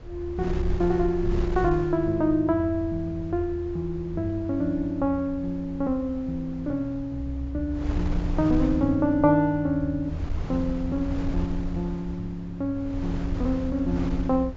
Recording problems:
treble cut off; nothing above 7.4 kHz
wind on the microphone; below 96 Hz, SNR 9 dB

